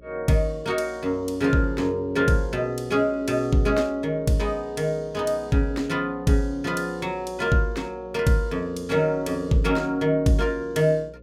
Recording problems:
hum; 60 Hz, harmonics up to 540 Hz, SNR 24 dB

